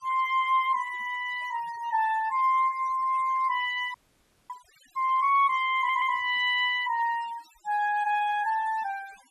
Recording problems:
denoising artefacts; signal-to-artefact ratio 21 dB
audio freezing; at 4 s for 0.5 s
audio stuttering; at 6 s

